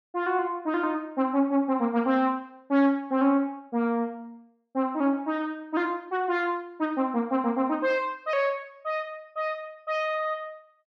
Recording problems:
none

